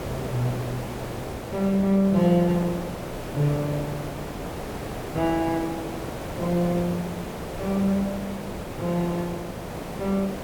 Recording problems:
background hiss; slope -7 dB per octave, SNR 8 dB

